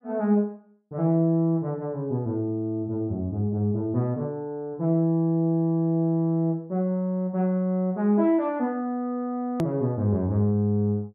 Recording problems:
hard cut with a click; at 9.5 s

